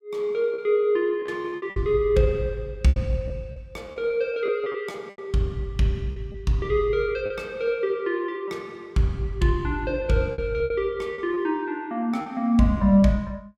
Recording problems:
packet loss; 8% of the sound replaced, filled with repeated pitch periods

